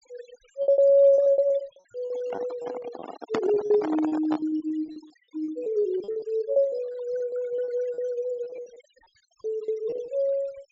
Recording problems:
treble cut off; nothing above 8 kHz
denoising artefacts; signal-to-artefact ratio 21 dB
packet loss; 17% of the sound replaced, filled with repeated pitch periods
microphone handling noise; from 2 to 4.5 s; peak +2 dB vs average level

